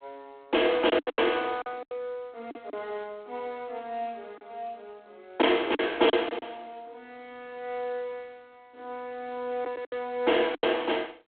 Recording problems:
phone line; 260 Hz to 3.4 kHz, G.726
packet loss; 7% of the sound replaced, filled with silence

